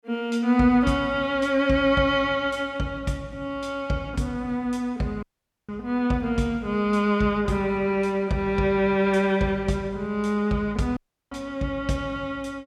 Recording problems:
dropout; at 5 s and at 11 s

